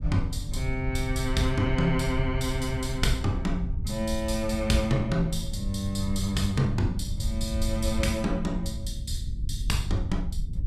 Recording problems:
low-frequency rumble; below 86 Hz, SNR 5 dB

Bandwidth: 14 kHz